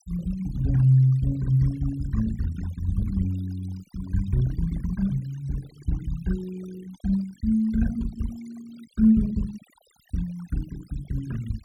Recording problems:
denoising artefacts; signal-to-artefact ratio 22 dB

